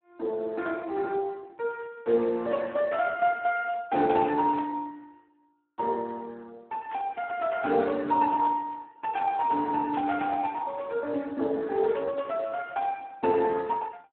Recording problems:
phone line; 190 Hz to 2.8 kHz, Speex
static burst; 4 times, first at 3 s; peak -11 dB vs average level

